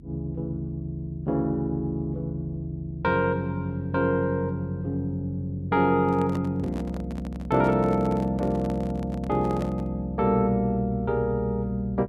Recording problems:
hum; 50 Hz, harmonics up to 350 Hz, SNR 20 dB
microphone handling noise; from 6 to 10 s; peak -6 dB vs average level

